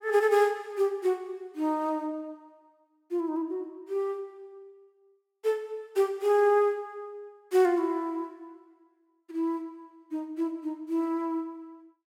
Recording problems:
none

